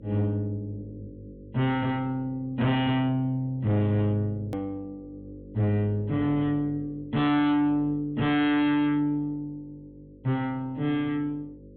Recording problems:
low-pass filter; nothing above 4 kHz
distortion; soft clipping, signal-to-distortion ratio 6 dB
electrical hum; 50 Hz, harmonics up to 550 Hz, SNR 21 dB
hard cut with a click; at 4.5 s

